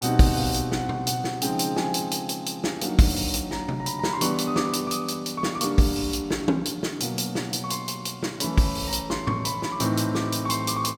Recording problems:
none

